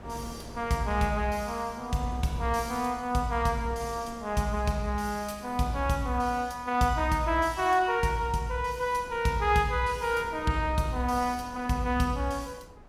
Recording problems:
wind noise; below 580 Hz, SNR 20 dB

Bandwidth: 17 kHz